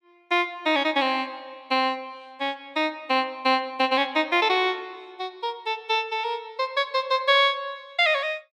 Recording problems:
none

